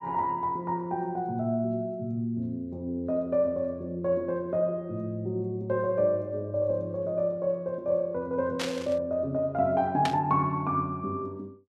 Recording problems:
burst of static; at 8.5 s and at 10 s; peak +1 dB vs average level

